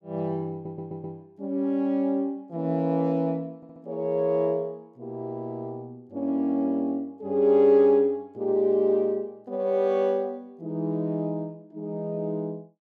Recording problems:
stutter; at 0.5 s and at 3.5 s

